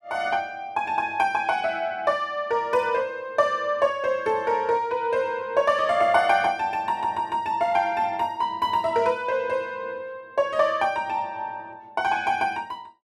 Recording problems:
none

